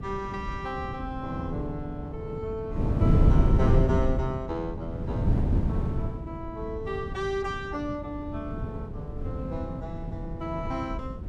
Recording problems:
wind on the microphone; below 160 Hz, SNR -4 dB

